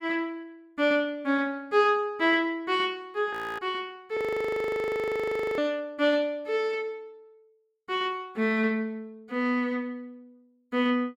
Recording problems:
audio freezing; at 3.5 s and at 4 s for 1.5 s

